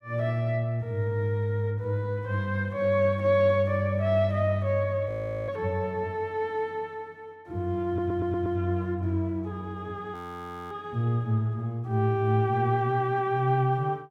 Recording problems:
frozen audio; at 5 s and at 10 s for 0.5 s
audio stuttering; at 8 s

